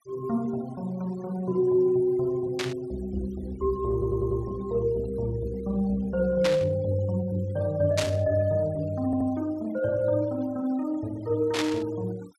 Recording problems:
noise reduction artefacts; signal-to-artefact ratio 25 dB
static burst; 4 times, first at 2.5 s; peak +2 dB vs average level
stutter; at 4 s and at 9 s

